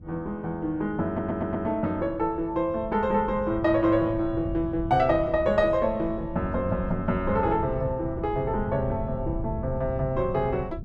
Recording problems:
wind noise; below 150 Hz, SNR 10 dB
stutter; at 1 s

